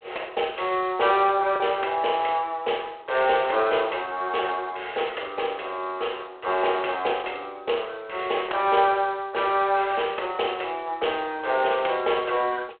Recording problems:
phone line; 340 Hz to 3.3 kHz, G.726
packet loss; 0.6% of the sound replaced, filled with the last packet

